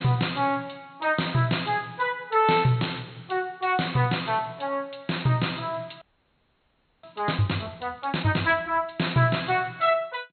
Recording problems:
treble cut off; nothing above 4.2 kHz
audio freezing; at 6 s for 1 s

